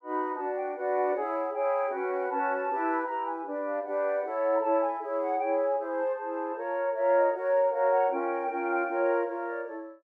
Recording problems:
none

